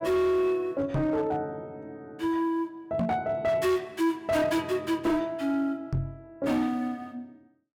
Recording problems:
distorted audio; hard clipping, signal-to-distortion ratio 12 dB
knock on the microphone; at 1 s, at 3 s and at 6 s; peak +2 dB vs average level

